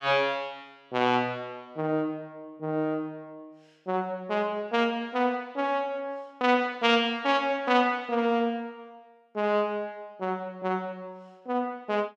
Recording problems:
none

